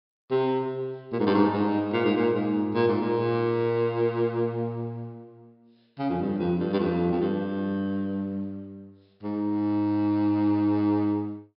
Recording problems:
low-pass filter; nothing above 5.3 kHz

